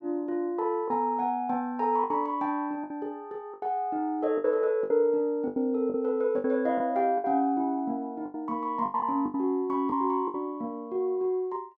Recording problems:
lost packets; 8% of the sound replaced, filled with the last packet

